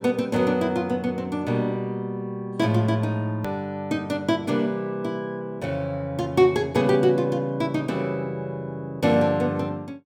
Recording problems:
click at an edit; at 3.5 s

